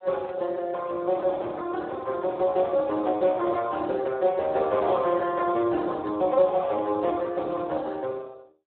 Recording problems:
phone line; 260 Hz to 2.1 kHz, Speex

